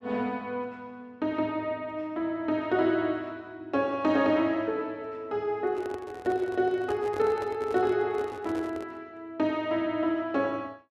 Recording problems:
microphone handling noise; from 5.5 to 9 s; peak -6 dB vs average level

